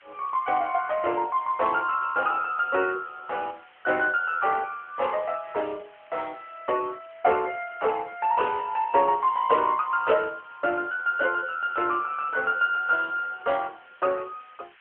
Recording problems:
telephone audio; 340 Hz to 3.2 kHz, AMR-NB
hiss; SNR 28 dB

